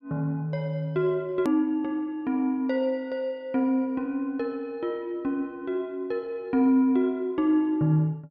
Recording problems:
hard cut with a click; at 1.5 s

